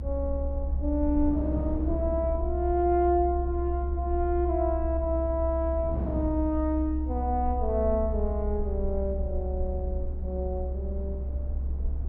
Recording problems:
low-frequency rumble; below 68 Hz, strongest tone 66 Hz, SNR 2 dB
wind noise; below 340 Hz, SNR 13 dB

